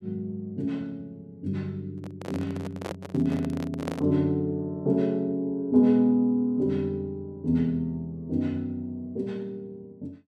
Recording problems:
microphone handling noise; from 2 to 4 s; peak -2 dB vs average level

